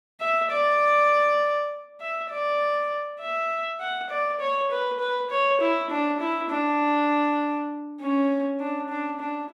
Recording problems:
none

